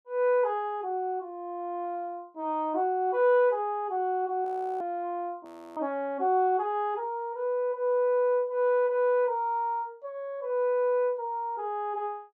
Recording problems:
frozen audio; at 4.5 s and at 5.5 s

